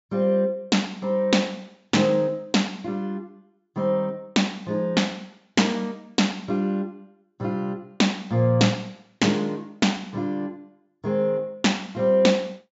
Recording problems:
treble cut off; nothing above 8 kHz

